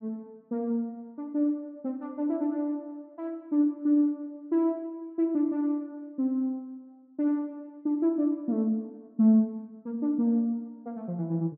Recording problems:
low-pass filter; nothing above 5.5 kHz

